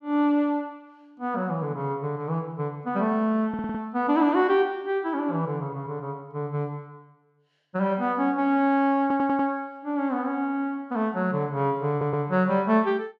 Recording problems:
stutter; at 3.5 s, at 9 s and at 12 s

